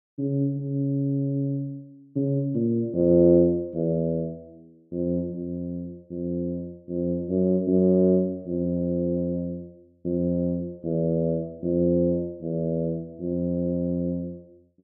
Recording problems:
none

